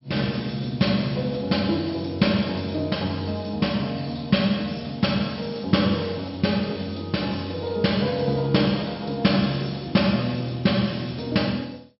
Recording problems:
low-pass filter; nothing above 5.4 kHz

